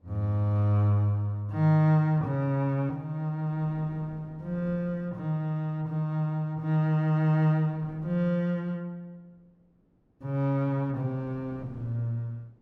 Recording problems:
wind noise; below 340 Hz, SNR 24 dB

